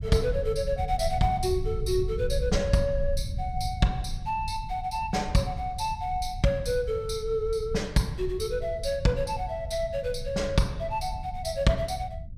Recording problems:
rumble; below 92 Hz, SNR 8 dB

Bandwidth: 15.5 kHz